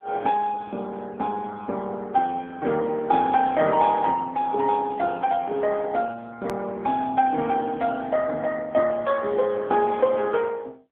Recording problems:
phone line; 240 Hz to 2.8 kHz, AMR-NB
hard cut with a click; at 6.5 s

